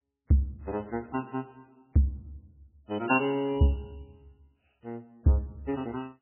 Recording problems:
codec artefacts; MP3, log-spectral distance 2 dB, nothing above 2.7 kHz

